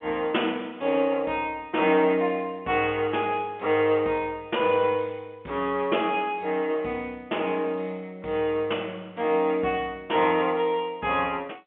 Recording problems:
phone line; 260 Hz to 3.2 kHz, G.711

